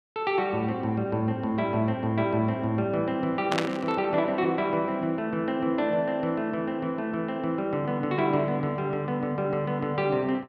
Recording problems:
static burst; at 3.5 s; peak +3 dB vs average level

